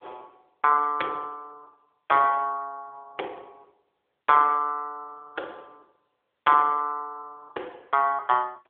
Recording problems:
phone line; 320 Hz to 3.4 kHz, AMR-NB

